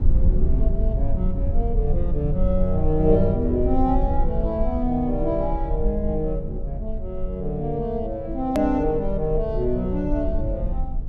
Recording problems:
rumble; below 62 Hz, SNR 2 dB
click at an edit; at 8.5 s

